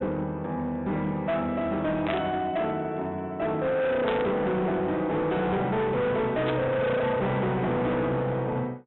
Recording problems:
low-pass filter; nothing above 3.8 kHz
distortion; hard clipping, signal-to-distortion ratio 8 dB
burst of static; at 2 s, at 4 s and at 6.5 s; peak -2 dB vs average level

